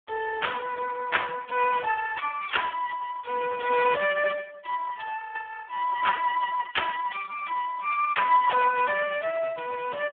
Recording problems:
phone line; 170 Hz to 3.4 kHz, Speex

